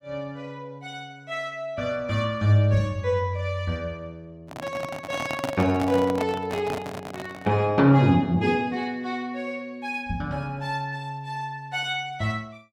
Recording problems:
handling noise; from 4.5 to 7.5 s; peak 0 dB vs average level

